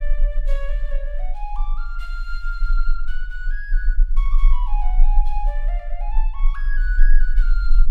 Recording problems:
rumble; below 32 Hz, strongest tone 22 Hz, SNR -11 dB

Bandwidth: 16 kHz